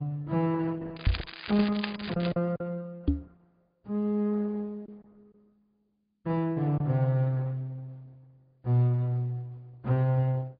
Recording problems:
treble missing; nothing above 4.9 kHz
lossy compression; Opus, log-spectral distance 3 dB
packet loss; 1.8% of the sound replaced, filled with silence
crackle; from 1 to 2.5 s; loose cable, SNR 11 dB
microphone bump; at 1 s and at 3 s; peak +7 dB vs average level

